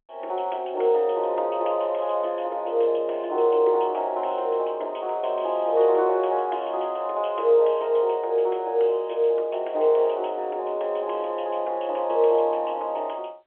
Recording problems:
telephone audio; 300 Hz to 3.4 kHz, G.711

